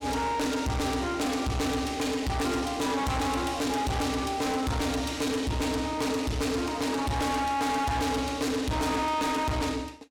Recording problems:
distortion; soft clipping, signal-to-distortion ratio 6 dB

